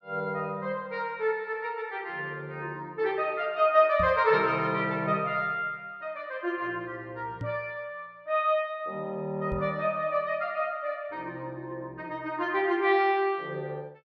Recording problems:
microphone bump; at 4 s, at 7.5 s and at 9.5 s; peak -3 dB vs average level

